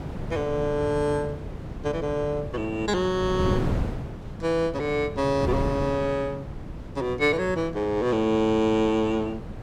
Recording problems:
wind noise; below 290 Hz, SNR 8 dB

